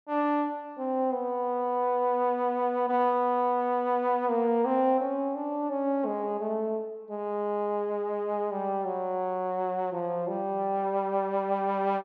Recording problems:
none

